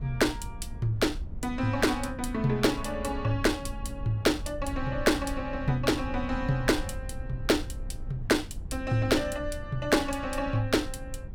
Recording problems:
low-frequency rumble; below 84 Hz, SNR 11 dB

